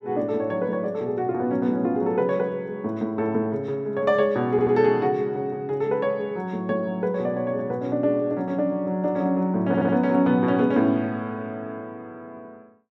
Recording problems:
audio stuttering; at 4.5 s and at 9.5 s

